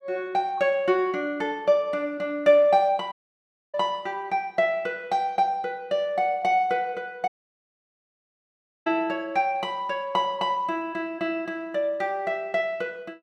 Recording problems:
dropout; at 3 s for 0.5 s and at 7.5 s for 1.5 s

